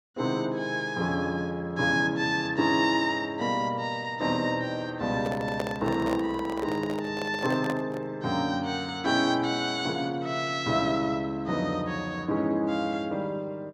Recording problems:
handling noise; from 5 to 8 s; peak 0 dB vs average level

